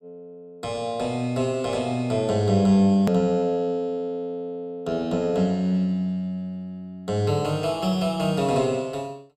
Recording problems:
hard cut with a click; at 3 s

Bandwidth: 15.5 kHz